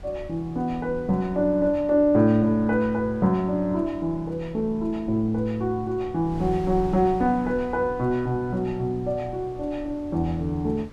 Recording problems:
wind noise; below 120 Hz, SNR 18 dB

